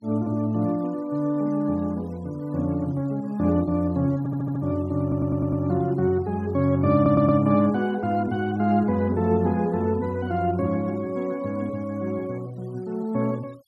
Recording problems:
denoising artefacts; signal-to-artefact ratio 28 dB
stutter; at 4 s, at 5 s and at 7 s

